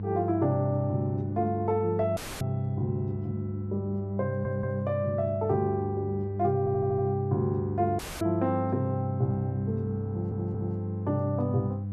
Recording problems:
hum; 50 Hz, harmonics up to 500 Hz, SNR 4 dB
audio cutting out; at 2 s and at 8 s
stutter; at 4.5 s, at 6.5 s and at 10 s

